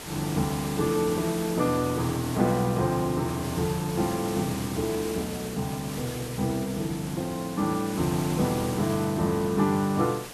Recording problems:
hiss; slope -3 dB per octave, SNR 10 dB

